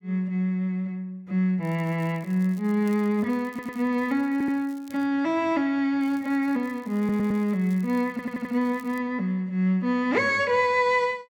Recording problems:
crackling; from 1.5 to 5 s and from 6 to 9 s; loose cable, SNR 29 dB
stutter; 4 times, first at 3.5 s

